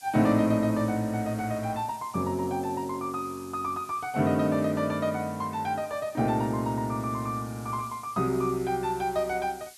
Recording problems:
background hiss; SNR 21 dB

